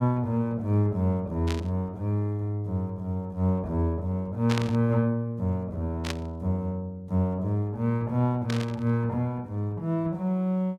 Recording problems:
static burst; 4 times, first at 1.5 s; peak -1 dB vs average level

